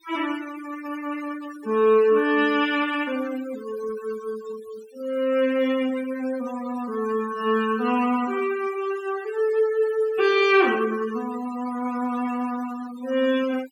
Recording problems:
noise reduction artefacts; signal-to-artefact ratio 18 dB

